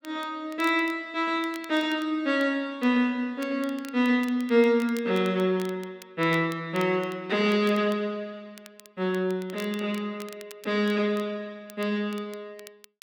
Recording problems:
crackle; vinyl, SNR 23 dB

